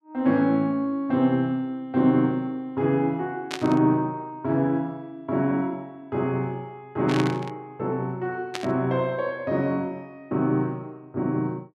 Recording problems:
burst of static; at 3.5 s, at 7 s and at 8.5 s; peak -1 dB vs average level

